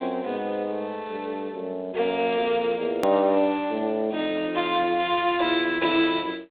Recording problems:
telephone audio; 240 Hz to 3.9 kHz, G.726
edit click; at 3 s

